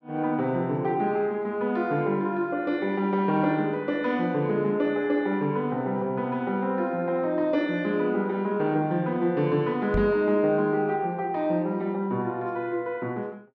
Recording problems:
knock on the microphone; at 10 s; peak +1 dB vs average level

